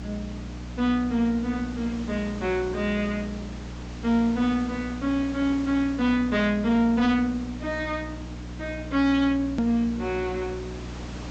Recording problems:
treble missing; nothing above 8 kHz
distorted audio; soft clipping, signal-to-distortion ratio 11 dB
mains hum; 60 Hz, harmonics up to 300 Hz, SNR 13 dB
hiss; slope -4 dB per octave, SNR 17 dB
click at an edit; at 9.5 s

